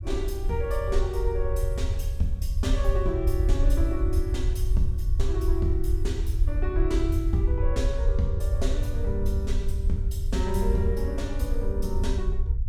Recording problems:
low-frequency rumble; below 68 Hz, SNR -3 dB

